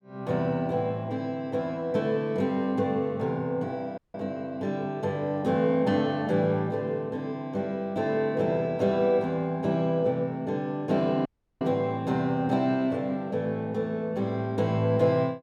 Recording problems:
dropout; at 4 s and at 11 s

